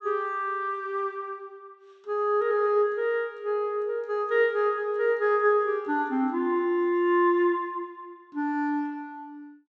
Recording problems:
treble missing; nothing above 8 kHz

